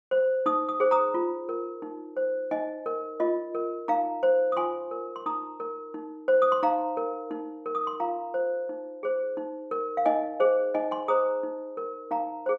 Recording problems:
none

